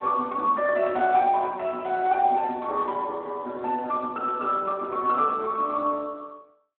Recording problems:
phone line; 240 Hz to 2.6 kHz, Speex

